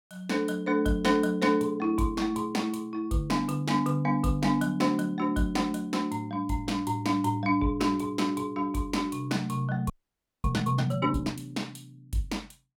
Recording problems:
frozen audio; at 10 s for 0.5 s

